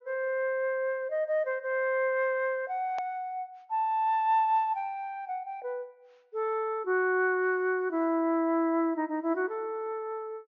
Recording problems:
treble cut off; nothing above 6.8 kHz
edit click; at 3 s

